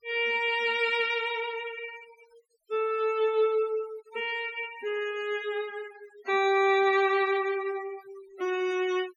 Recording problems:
denoising artefacts; signal-to-artefact ratio 20 dB

